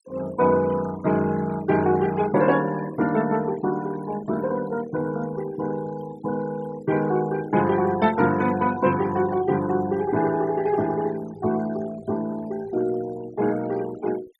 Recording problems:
noise reduction artefacts; signal-to-artefact ratio 18 dB

